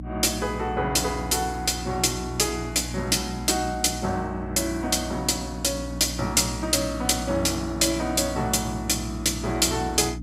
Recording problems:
hum; 60 Hz, harmonics up to 300 Hz, SNR 11 dB

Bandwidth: 15.5 kHz